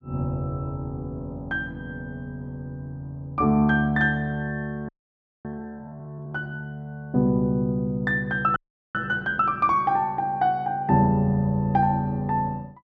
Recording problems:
frozen audio; at 5 s for 0.5 s and at 8.5 s

